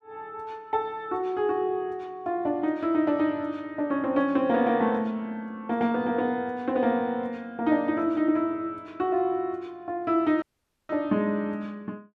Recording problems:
audio cutting out; at 10 s

